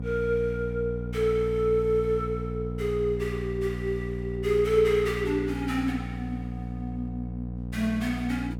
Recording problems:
hum; 60 Hz, harmonics up to 540 Hz, SNR 6 dB

